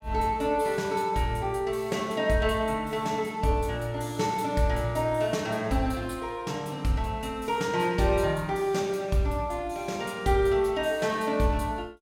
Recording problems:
none

